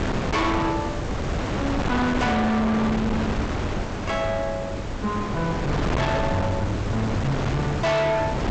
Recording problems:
lossy compression; G.722, log-spectral distance 4 dB, nothing above 7.6 kHz
distorted audio; hard clipping, signal-to-distortion ratio 8 dB
hum; 50 Hz, harmonics up to 600 Hz, SNR 16 dB
hiss; slope -2 dB per octave, SNR 22 dB
wind on the microphone; below 840 Hz, SNR 2 dB

